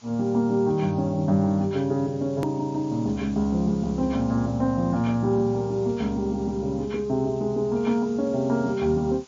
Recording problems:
codec artefacts; MP3, log-spectral distance 5 dB, nothing above 13.7 kHz
background hiss; SNR 27 dB
edit click; at 2.5 s

